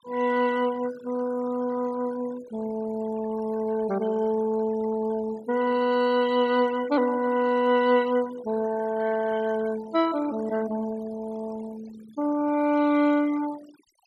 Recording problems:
noise reduction artefacts; signal-to-artefact ratio 19 dB

